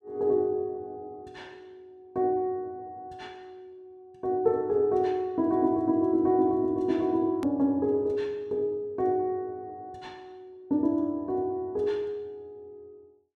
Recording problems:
edit click; at 7.5 s

